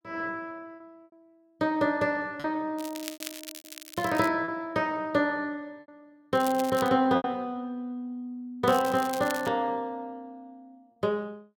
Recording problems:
lost packets; 4% of the sound replaced, filled with repeated pitch periods
crackling; from 3 to 4.5 s, at 6.5 s and at 8.5 s; loose cable, SNR 13 dB

